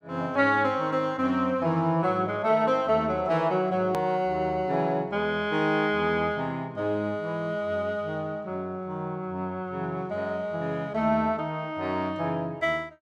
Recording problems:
click at an edit; at 4 s

